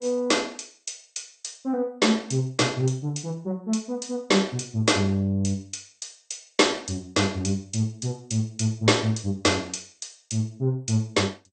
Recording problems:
lossy codec; MP2, log-spectral distance 5 dB, nothing above 8.5 kHz

